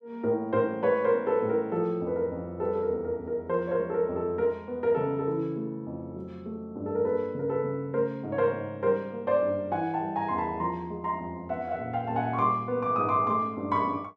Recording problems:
none

